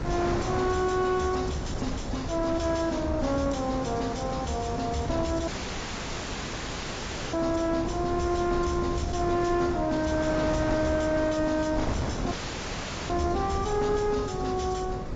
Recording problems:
lossy compression; AAC, log-spectral distance 6 dB, nothing above 7.3 kHz
distortion; soft clipping, signal-to-distortion ratio 10 dB
electrical hum; 50 Hz, harmonics up to 600 Hz, SNR 12 dB
rumble; below 200 Hz, SNR 10 dB
wind noise; below 910 Hz, SNR 8 dB
audio cutting out; at 5.5 s for 2 s and at 12 s for 1 s

